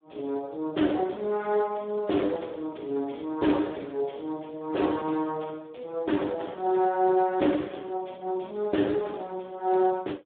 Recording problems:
phone line; 240 Hz to 3.9 kHz, Speex

